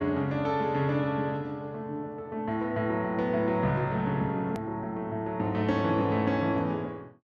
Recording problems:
hard cut with a click; at 4.5 s

